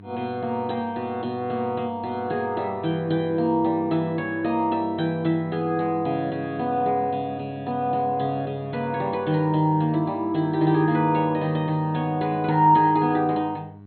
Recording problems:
lossy codec; MP2, log-spectral distance 2 dB, nothing above 4.2 kHz
hum; 50 Hz, harmonics up to 1.1 kHz, SNR 20 dB

